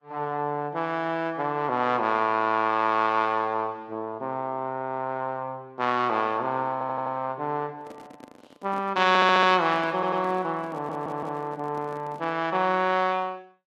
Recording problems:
lossy compression; Vorbis, log-spectral distance 2 dB
audio stuttering; 4 times, first at 6.5 s
handling noise; from 8 to 12 s; peak -12 dB vs average level

